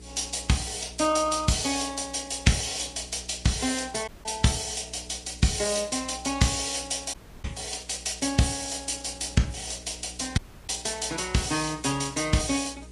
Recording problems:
lossy codec; Vorbis, then Vorbis, log-spectral distance 10 dB, nothing above 10.1 kHz
hum; 60 Hz, harmonics up to 480 Hz, SNR 21 dB
hiss; slope 0 dB per octave, SNR 26 dB
audio cutting out; at 4 s, at 7 s and at 10 s

